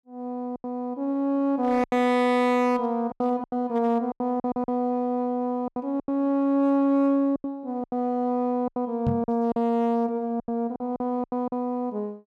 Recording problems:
distorted audio; hard clipping, signal-to-distortion ratio 11 dB
lost packets; 11% of the sound replaced, filled with silence
microphone thump; at 9 s; peak +3 dB vs average level

